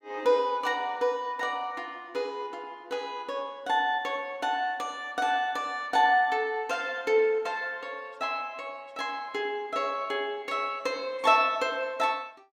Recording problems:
none

